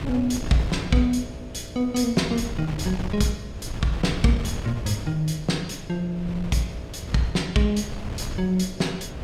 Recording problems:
hum; 60 Hz, harmonics up to 660 Hz, SNR 19 dB
wind on the microphone; below 190 Hz, SNR 10 dB

